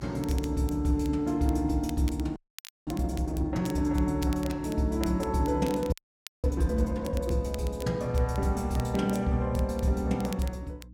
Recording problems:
mains hum; 60 Hz, harmonics up to 300 Hz, SNR 22 dB
crackle; vinyl, SNR 19 dB
audio freezing; at 2.5 s for 0.5 s and at 6 s for 0.5 s

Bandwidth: 16.5 kHz